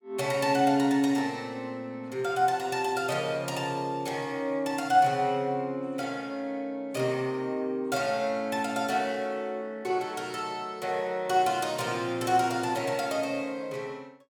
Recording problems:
none

